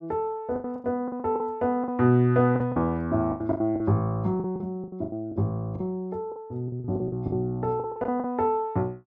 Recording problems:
packet loss; 15% of the sound replaced, filled with the last packet

